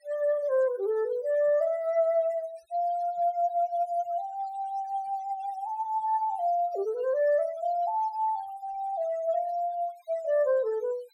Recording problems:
noise reduction artefacts; signal-to-artefact ratio 24 dB

